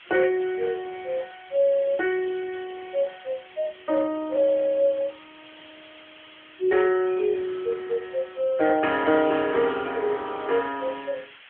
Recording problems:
phone line; 280 Hz to 3.3 kHz, AMR-NB
background hiss; SNR 21 dB

